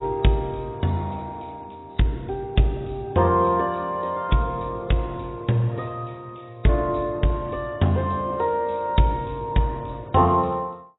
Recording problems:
codec artefacts; AAC, log-spectral distance 8 dB, nothing above 3.8 kHz

